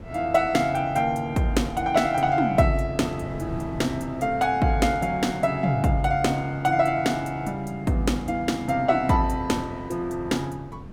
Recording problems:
wind on the microphone; below 280 Hz, SNR 17 dB

